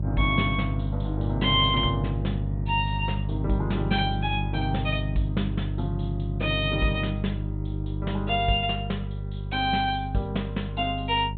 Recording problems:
low-pass filter; nothing above 4 kHz
electrical hum; 50 Hz, harmonics up to 400 Hz, SNR 3 dB

